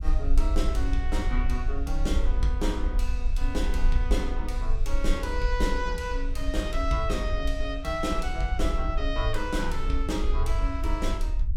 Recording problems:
rumble; below 50 Hz, SNR -1 dB

